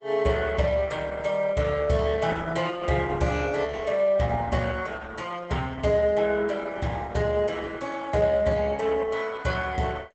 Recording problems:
lossy codec; Opus, log-spectral distance 4 dB, nothing above 8 kHz

